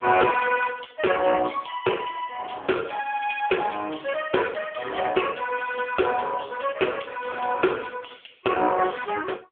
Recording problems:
phone line; 280 Hz to 3.3 kHz, AMR-NB

